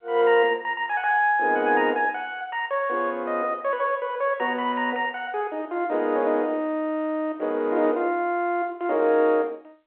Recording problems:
phone line; 320 Hz to 3.7 kHz, G.711

